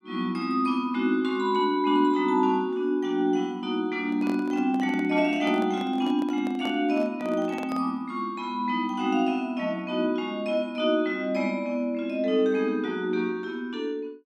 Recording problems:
handling noise; from 4 to 8 s; peak -8 dB vs average level

